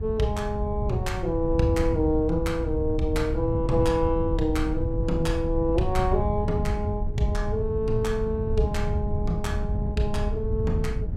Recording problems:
wind on the microphone; below 110 Hz, SNR 2 dB

